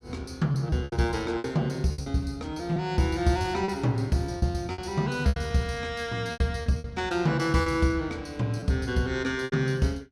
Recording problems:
lost packets; 10% of the sound replaced, filled with repeated pitch periods

